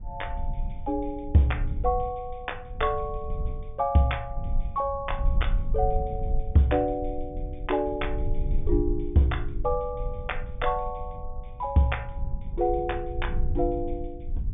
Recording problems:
low-pass filter; nothing above 3.6 kHz
low-frequency rumble; below 62 Hz, SNR 6 dB

